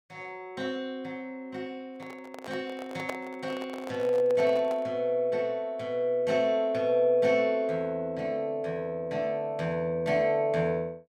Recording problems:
microphone handling noise; from 2 to 5 s; peak -2 dB vs average level

